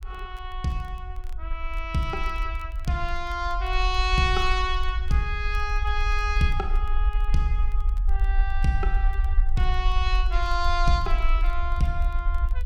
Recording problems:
rumble; below 50 Hz, SNR 0 dB
crackling; vinyl, SNR 29 dB

